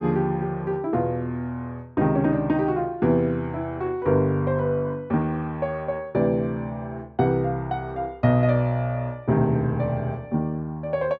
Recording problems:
none

